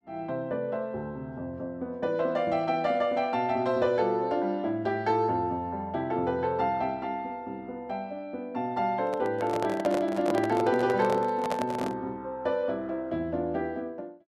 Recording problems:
handling noise; from 9 to 12 s; peak +1 dB vs average level

